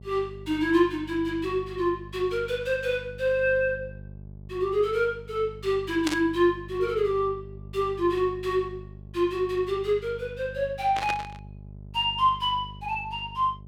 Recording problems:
hum; 50 Hz, harmonics up to 600 Hz, SNR 17 dB
static burst; at 6 s and at 11 s; peak 0 dB vs average level

